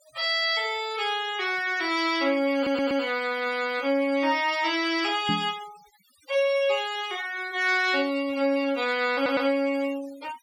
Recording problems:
denoising artefacts; signal-to-artefact ratio 19 dB
audio stuttering; at 2.5 s and at 9 s
microphone bump; at 5.5 s; peak 0 dB vs average level

